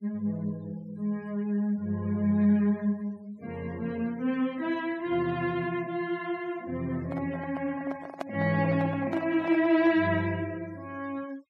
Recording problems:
noise reduction artefacts; signal-to-artefact ratio 24 dB
handling noise; from 7 to 10 s; peak -2 dB vs average level

